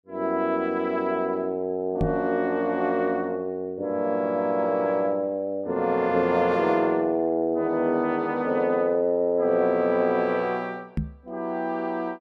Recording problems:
microphone thump; at 2 s and at 11 s; peak +2 dB vs average level

